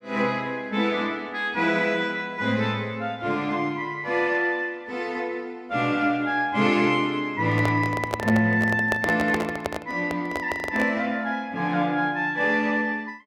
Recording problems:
handling noise; from 7.5 to 11 s; peak +1 dB vs average level

